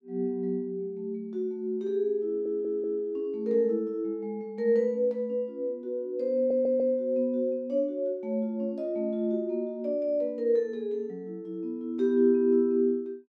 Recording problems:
stutter; at 2.5 s and at 6.5 s

